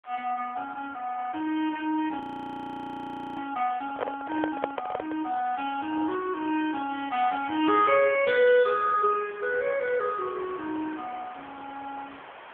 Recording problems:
phone line; 280 Hz to 3.4 kHz, AMR-NB
background hiss; SNR 21 dB
audio freezing; at 2 s for 1 s
handling noise; from 4 to 5 s; peak +3 dB vs average level

